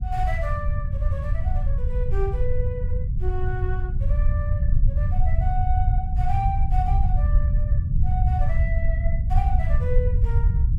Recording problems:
low-frequency rumble; below 82 Hz, SNR -9 dB

